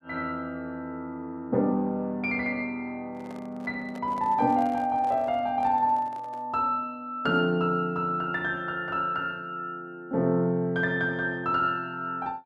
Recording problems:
microphone handling noise; from 3 to 6.5 s; peak -11 dB vs average level

